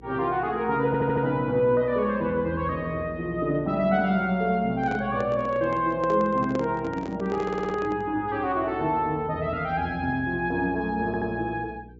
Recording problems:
treble cut off; nothing above 8 kHz
hum; 60 Hz, harmonics up to 480 Hz, SNR 20 dB
stutter; at 1 s, at 7.5 s and at 11 s
handling noise; from 5 to 8 s; peak -3 dB vs average level

